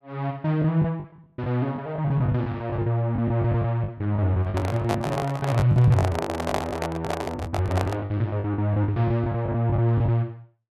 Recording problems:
lost packets; 16% of the sound replaced, filled with the last packet
microphone handling noise; from 4.5 to 8 s; peak +3 dB vs average level

